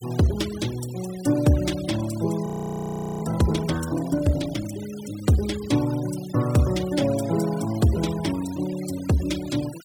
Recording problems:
noise reduction artefacts; signal-to-artefact ratio 16 dB
frozen audio; at 2.5 s for 1 s

